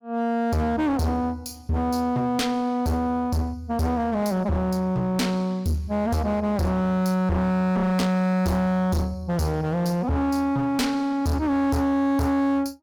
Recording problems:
distorted audio; hard clipping, uneven, signal-to-distortion ratio 6 dB

